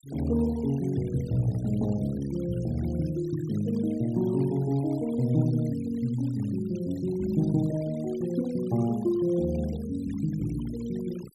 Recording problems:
denoising artefacts; signal-to-artefact ratio 22 dB

